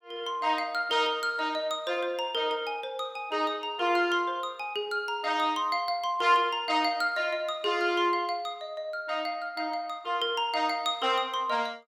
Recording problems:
none

